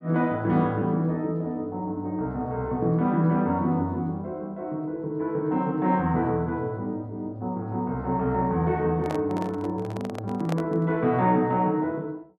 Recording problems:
microphone handling noise; from 9 to 11 s; peak -2 dB vs average level

